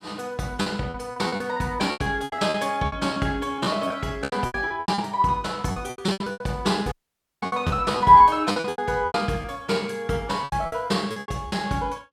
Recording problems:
packet loss; 17% of the sound replaced, filled with repeated pitch periods
dropout; at 7 s for 0.5 s

